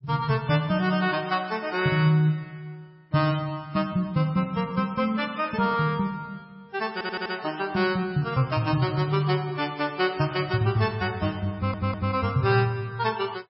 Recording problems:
lossy compression; MP3, log-spectral distance 3 dB, nothing above 5.3 kHz
audio stuttering; at 7 s and at 12 s

